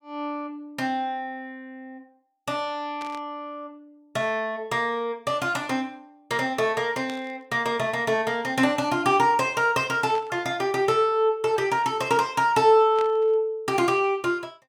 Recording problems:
burst of static; 5 times, first at 3 s; peak -11 dB vs average level

